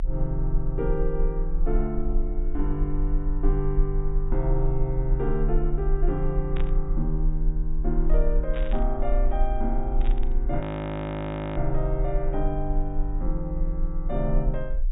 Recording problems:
low-pass filter; nothing above 4 kHz
rumble; below 36 Hz, strongest tone 26 Hz, SNR -1 dB
static burst; at 6.5 s, at 8.5 s and at 10 s; peak -7 dB vs average level
audio freezing; at 11 s for 1 s

